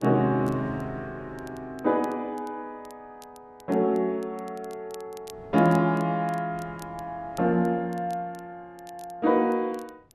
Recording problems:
wind noise; below 470 Hz, SNR 22 dB
crackling; vinyl, SNR 27 dB

